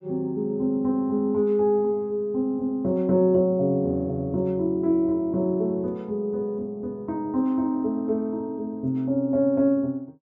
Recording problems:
none

